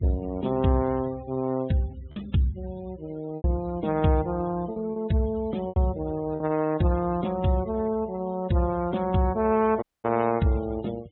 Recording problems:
treble cut off; nothing above 3.9 kHz
noise reduction artefacts; signal-to-artefact ratio 23 dB
packet loss; 3% of the sound replaced, filled with repeated pitch periods
dropout; at 10 s

